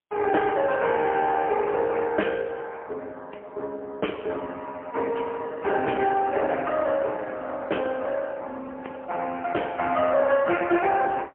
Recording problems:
telephone audio; 300 Hz to 3.1 kHz, AMR-NB, then MP3

